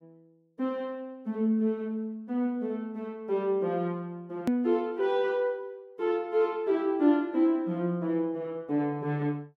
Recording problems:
edit click; at 4.5 s

